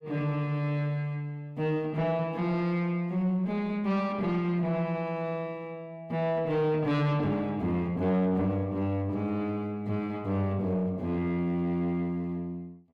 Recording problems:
distorted audio; soft clipping, signal-to-distortion ratio 10 dB

